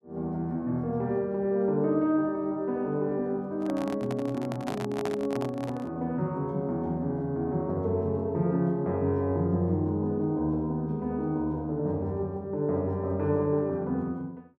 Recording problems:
handling noise; from 3.5 to 6 s; peak -1 dB vs average level

